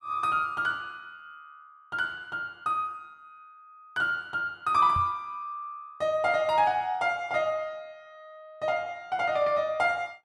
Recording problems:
microphone bump; at 5 s; peak -4 dB vs average level

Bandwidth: 13 kHz